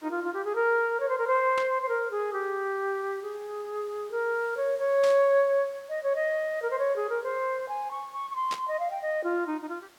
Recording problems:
hiss; slope -2 dB per octave, SNR 26 dB
static burst; at 1.5 s, at 5 s and at 8.5 s; peak -4 dB vs average level

